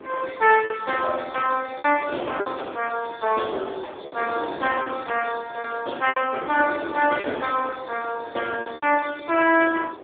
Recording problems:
phone line; 280 Hz to 3.5 kHz, AMR-NB
wind on the microphone; below 680 Hz, SNR 14 dB
packet loss; 6% of the sound replaced, filled with repeated pitch periods

